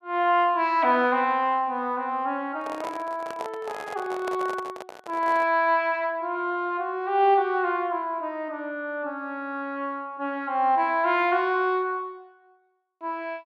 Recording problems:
handling noise; from 2.5 to 5.5 s; peak -4 dB vs average level

